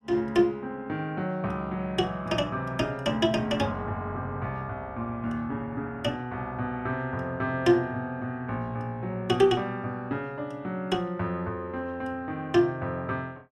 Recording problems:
none

